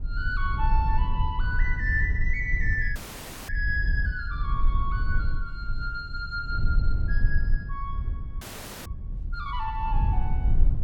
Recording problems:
rumble; below 64 Hz, SNR -2 dB
audio freezing; at 3 s for 0.5 s and at 8.5 s

